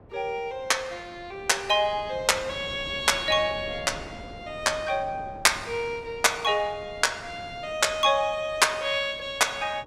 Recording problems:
wind noise; below 530 Hz, SNR 20 dB

